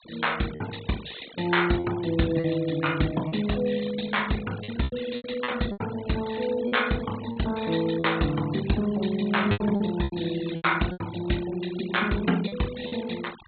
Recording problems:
treble cut off; nothing above 4.1 kHz
denoising artefacts; signal-to-artefact ratio 15 dB
packet loss; 8% of the sound replaced, filled with repeated pitch periods

